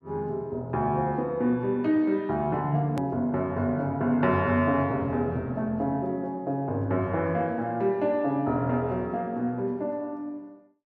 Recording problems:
hard cut with a click; at 3 s

